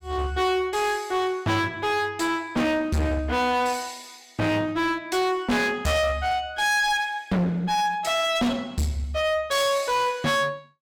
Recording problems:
distorted audio; hard clipping, uneven, signal-to-distortion ratio 6 dB

